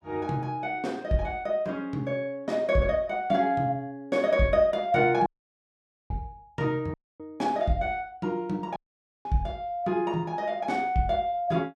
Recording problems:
dropout; at 5.5 s for 1 s, at 7 s and at 9 s

